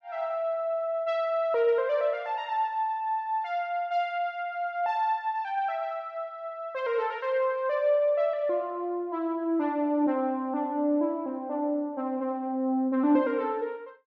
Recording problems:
none

